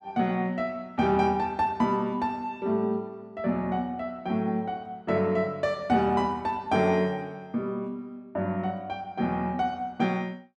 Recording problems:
none

